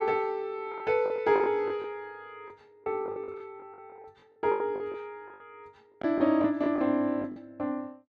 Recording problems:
packet loss; 13% of the sound replaced, filled with the last packet

